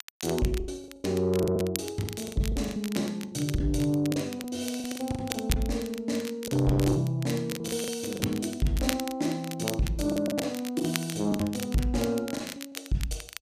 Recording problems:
distorted audio; soft clipping, signal-to-distortion ratio 12 dB
crackle; vinyl, SNR 10 dB
packet loss; 13% of the sound replaced, filled with the last packet

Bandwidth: 14.5 kHz